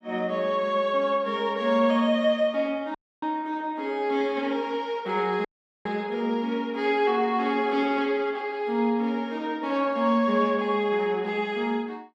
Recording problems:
dropout; at 3 s and at 5.5 s

